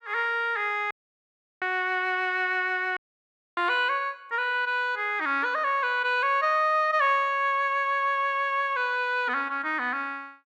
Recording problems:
dropout; at 1 s for 0.5 s and at 3 s for 0.5 s

